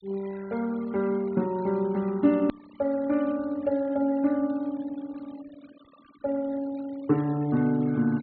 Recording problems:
treble cut off; nothing above 4.3 kHz
noise reduction artefacts; signal-to-artefact ratio 23 dB
hard cut with a click; at 2.5 s

